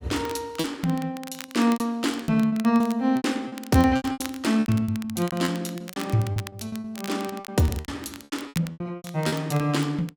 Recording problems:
crackle; vinyl, SNR 17 dB
packet loss; 18% of the sound replaced, filled with repeated pitch periods

